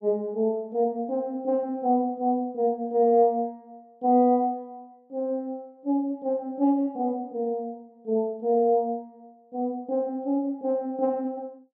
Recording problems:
none

